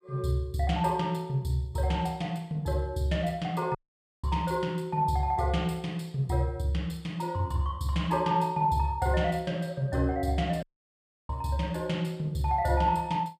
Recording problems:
dropout; at 4 s and at 11 s for 0.5 s

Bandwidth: 15 kHz